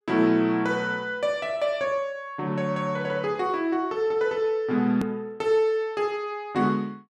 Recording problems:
hard cut with a click; at 5 s

